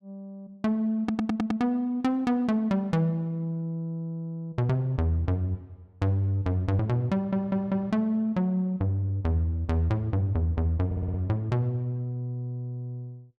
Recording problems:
audio stuttering; at 1 s, at 7 s and at 11 s

